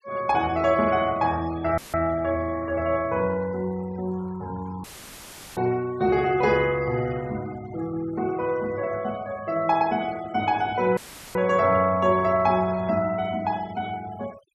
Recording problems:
noise reduction artefacts; signal-to-artefact ratio 21 dB
audio cutting out; at 2 s, at 5 s for 0.5 s and at 11 s; filled with static

